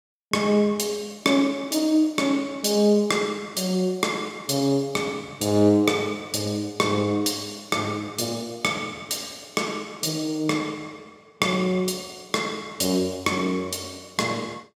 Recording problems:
none

